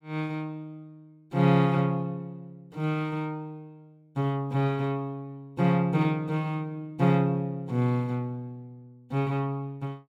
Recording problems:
none

